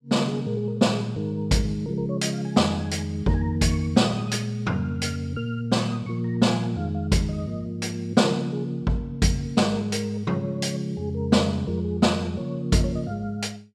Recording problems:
none

